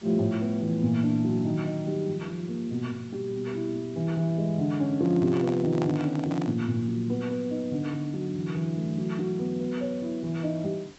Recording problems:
treble cut off; nothing above 7.8 kHz
hiss; slope -2 dB per octave, SNR 24 dB
microphone handling noise; from 5 to 6.5 s; peak -3 dB vs average level

